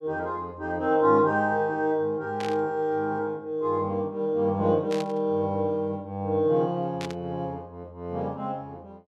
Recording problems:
burst of static; at 2.5 s, at 5 s and at 7 s; peak -7 dB vs average level

